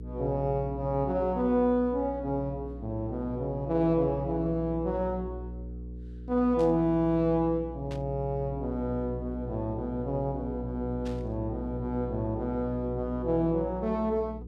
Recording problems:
electrical hum; 60 Hz, harmonics up to 480 Hz, SNR 11 dB
static burst; at 6.5 s, at 8 s and at 11 s; peak -13 dB vs average level

